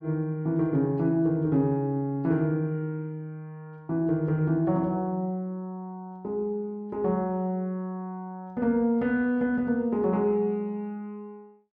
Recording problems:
none

